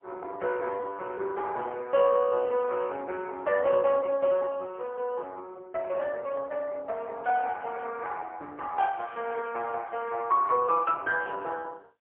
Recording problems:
telephone audio; 340 Hz to 3.1 kHz, AMR-NB, then MP3

